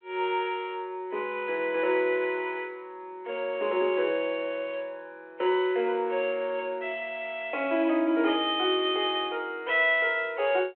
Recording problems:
telephone audio; 260 Hz to 3.3 kHz, G.726

